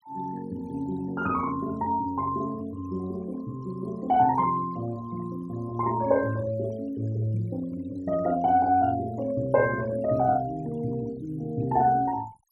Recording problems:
noise reduction artefacts; signal-to-artefact ratio 22 dB

